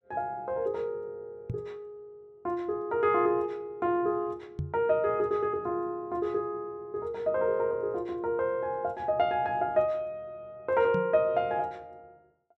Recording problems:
microphone bump; at 1.5 s, at 4.5 s and at 11 s; peak 0 dB vs average level

